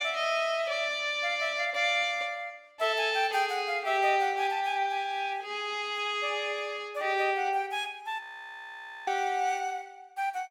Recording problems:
audio freezing; at 8 s for 1 s

